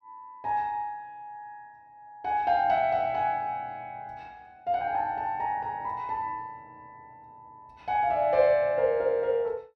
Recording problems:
none

